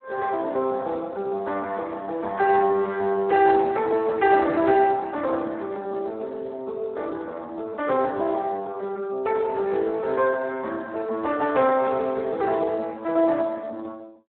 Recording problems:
phone line; 300 Hz to 2.1 kHz, Speex

